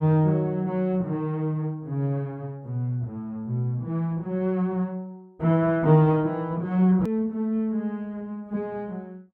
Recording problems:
edit click; at 7 s

